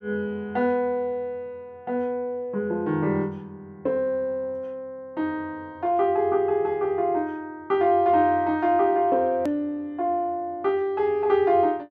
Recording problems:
edit click; at 9.5 s

